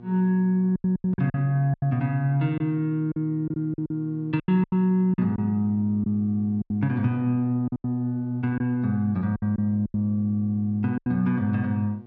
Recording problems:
hum; 60 Hz, harmonics up to 1.2 kHz, SNR 21 dB
lost packets; 10% of the sound replaced, filled with silence

